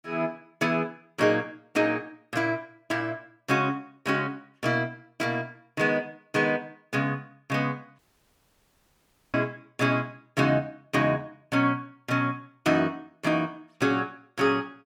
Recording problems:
audio cutting out; at 8 s for 1.5 s

